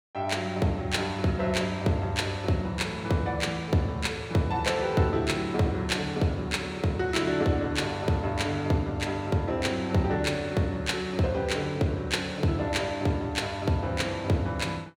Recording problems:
none

